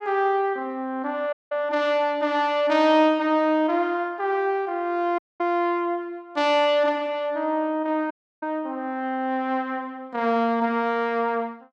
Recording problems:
dropout; at 1.5 s, at 5 s and at 8 s

